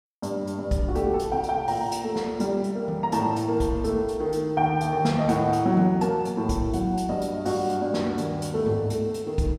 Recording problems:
none

